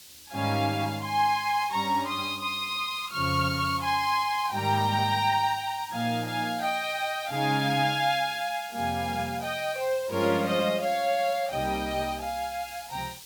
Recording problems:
background hiss; SNR 17 dB

